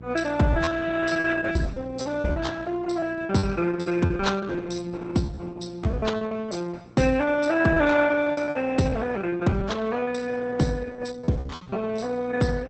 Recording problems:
lossy compression; Opus, log-spectral distance 4 dB, nothing above 8.2 kHz
mains hum; 60 Hz, harmonics up to 780 Hz, SNR 19 dB
packet loss; 15% of the sound replaced, filled with repeated pitch periods

